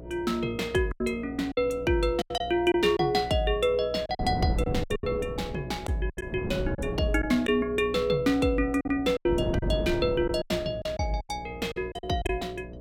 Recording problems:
hum; 60 Hz, harmonics up to 660 Hz, SNR 15 dB
wind noise; below 310 Hz, SNR 8 dB
packet loss; 9% of the sound replaced, filled with silence

